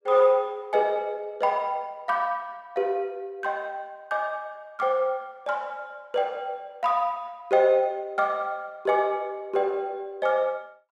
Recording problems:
none

